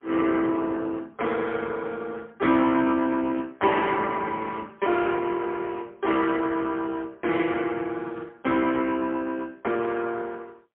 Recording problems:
telephone audio; 240 Hz to 3.2 kHz, AMR-NB, then MP3

